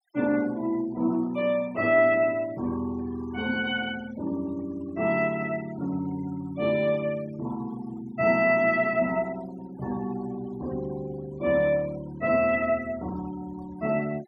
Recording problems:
noise reduction artefacts; signal-to-artefact ratio 22 dB

